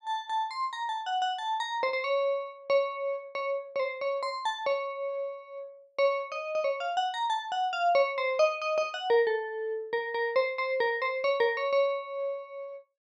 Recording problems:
none

